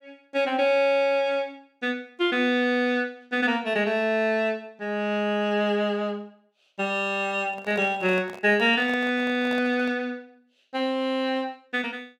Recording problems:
handling noise; from 7.5 to 10 s; peak -10 dB vs average level

